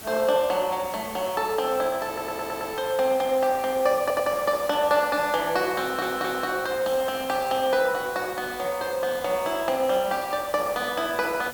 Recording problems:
hiss; slope -3 dB per octave, SNR 14 dB
audio stuttering; at 2 s, at 4 s and at 6 s

